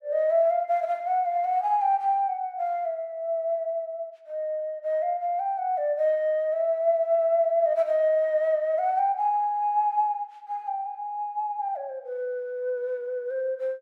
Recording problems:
none

